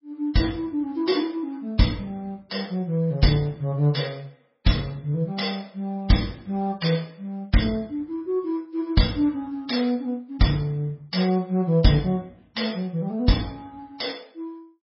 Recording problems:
lossy compression; MP3, log-spectral distance 3 dB, nothing above 5.3 kHz

